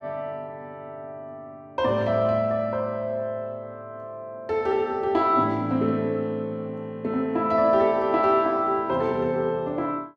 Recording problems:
none

